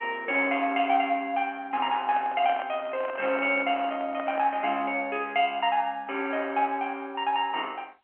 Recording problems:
telephone audio; 300 Hz to 3.2 kHz, G.711
microphone handling noise; from 2 to 4.5 s; peak -4 dB vs average level

